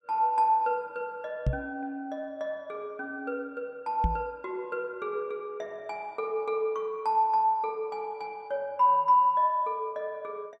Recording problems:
microphone thump; at 1.5 s and at 4 s; peak +5 dB vs average level

